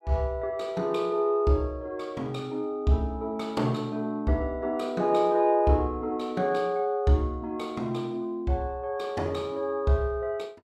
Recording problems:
none

